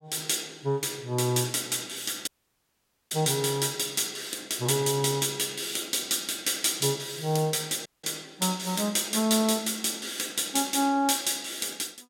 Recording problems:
audio cutting out; at 2.5 s for 1 s and at 8 s

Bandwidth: 16.5 kHz